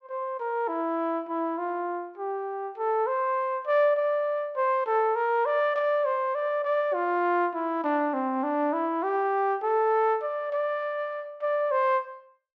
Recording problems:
none

